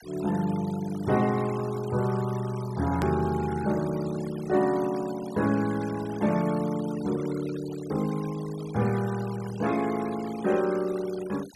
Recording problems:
noise reduction artefacts; signal-to-artefact ratio 17 dB
hard cut with a click; at 3 s

